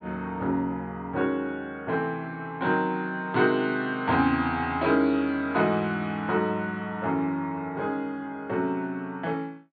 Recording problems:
low-pass filter; nothing above 4.5 kHz

